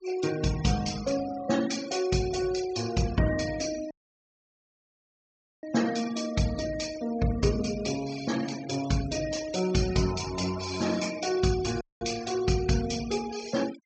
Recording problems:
low-pass filter; nothing above 8 kHz
denoising artefacts; signal-to-artefact ratio 13 dB
dropout; at 4 s for 1.5 s and at 12 s

